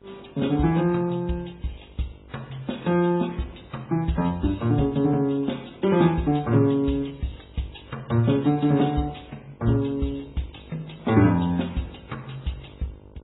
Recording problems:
lossy compression; MP3, then AAC, log-spectral distance 6 dB, nothing above 3.8 kHz
hum; 50 Hz, harmonics up to 1.5 kHz, SNR 27 dB

